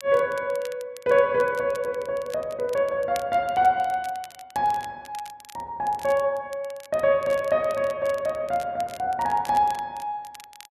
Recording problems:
crackling; vinyl, SNR 22 dB

